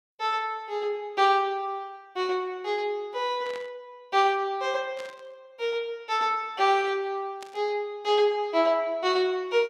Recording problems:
static burst; at 3.5 s, at 5 s and at 7.5 s; peak -12 dB vs average level

